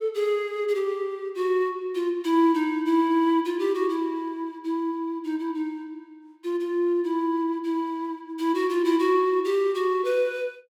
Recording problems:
none

